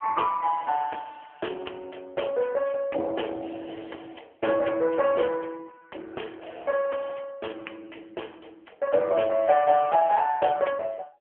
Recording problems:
phone line; 280 Hz to 3.2 kHz, AMR-NB

